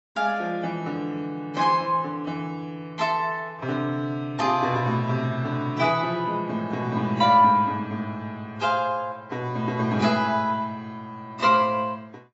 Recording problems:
codec artefacts; AAC, log-spectral distance 2 dB, nothing above 7.6 kHz

